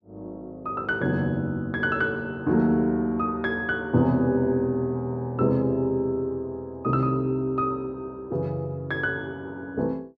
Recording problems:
none

